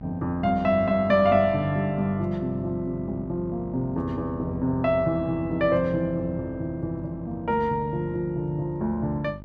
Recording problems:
mains hum; 50 Hz, harmonics up to 900 Hz, SNR 16 dB

